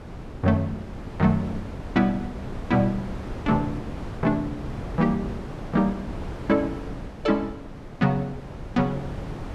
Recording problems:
wind on the microphone; below 420 Hz, SNR 10 dB

